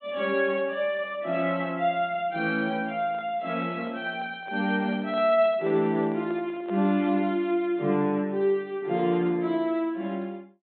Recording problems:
treble missing; nothing above 4 kHz
handling noise; from 3 to 7 s; peak -12 dB vs average level

